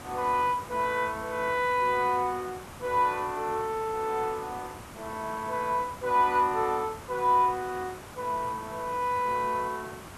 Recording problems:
background hiss; SNR 15 dB

